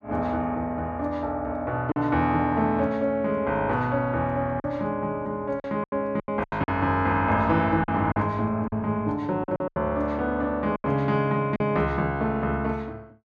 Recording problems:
packet loss; 6% of the sound replaced, filled with silence

